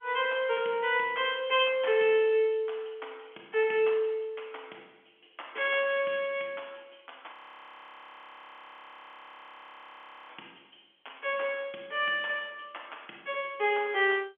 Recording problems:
phone line; 220 Hz to 3.4 kHz, G.711
frozen audio; at 7.5 s for 3 s

